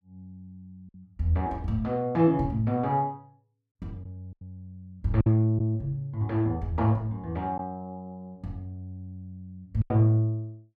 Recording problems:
lost packets; 3% of the sound replaced, filled with silence

